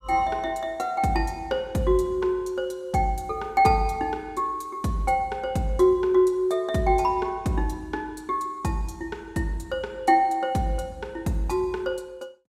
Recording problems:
none

